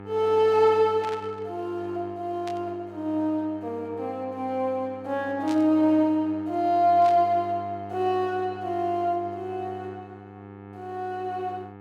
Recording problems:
electrical hum; 50 Hz, harmonics up to 2.2 kHz, SNR 17 dB
static burst; 4 times, first at 1 s; peak -11 dB vs average level

